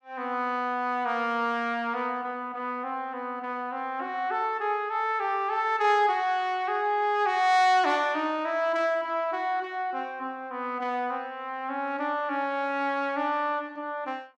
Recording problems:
none

